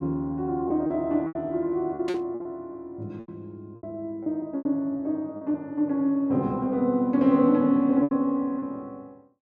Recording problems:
packet loss; 8% of the sound replaced, filled with repeated pitch periods
static burst; at 2 s; peak -9 dB vs average level

